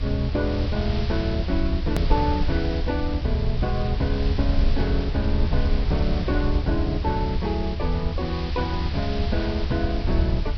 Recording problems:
lossy codec; Vorbis, log-spectral distance 7 dB, nothing above 17.1 kHz
hiss; SNR 11 dB
rumble; below 80 Hz, SNR -1 dB
hard cut with a click; at 2 s

